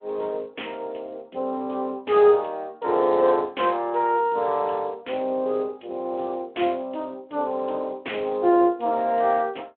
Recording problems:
telephone audio; 240 Hz to 3.5 kHz, Speex

